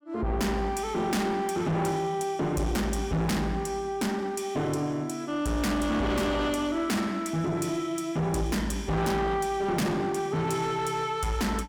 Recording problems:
distortion; soft clipping, signal-to-distortion ratio 7 dB

